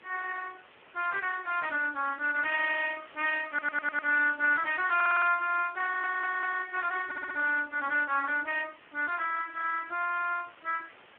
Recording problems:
phone line; 320 Hz to 2.3 kHz, Speex
hiss; SNR 24 dB
audio stuttering; 4 times, first at 3.5 s

